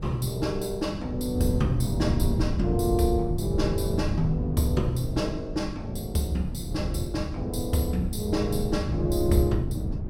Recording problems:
wind on the microphone; below 150 Hz, SNR 3 dB

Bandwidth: 16.5 kHz